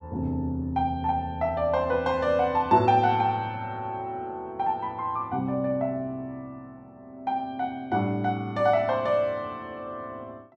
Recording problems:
none

